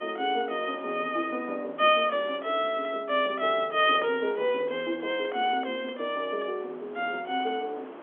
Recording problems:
telephone audio; 280 Hz to 3.4 kHz, G.711
wind on the microphone; below 1.1 kHz, SNR 20 dB

